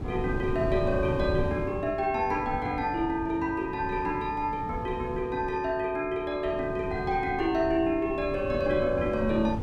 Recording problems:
wind on the microphone; below 260 Hz, SNR 8 dB

